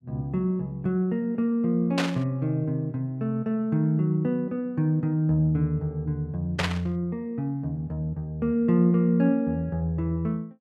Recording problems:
burst of static; at 2 s and at 6.5 s; peak +3 dB vs average level

